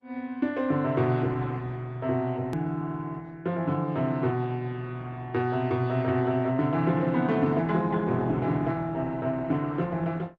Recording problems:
codec artefacts; Opus, log-spectral distance 2 dB, nothing above 13.1 kHz
click at an edit; at 2.5 s

